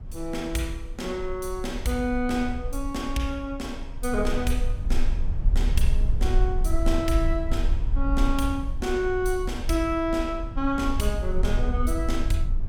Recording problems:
low-frequency rumble; below 52 Hz, SNR 1 dB

